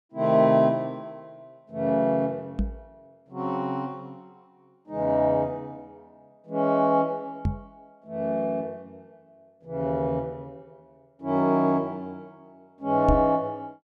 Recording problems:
knock on the microphone; at 2.5 s, at 7.5 s and at 13 s; peak +4 dB vs average level

